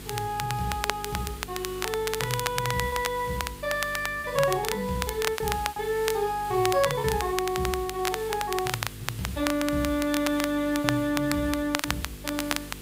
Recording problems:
hum; 50 Hz, harmonics up to 500 Hz, SNR 16 dB
background hiss; SNR 15 dB
crackle; vinyl, SNR 5 dB
packet loss; 3% of the sound replaced, filled with repeated pitch periods

